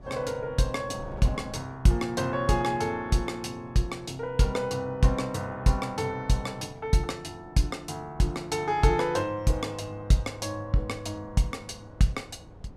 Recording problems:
wind on the microphone; below 350 Hz, SNR 21 dB

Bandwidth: 14.5 kHz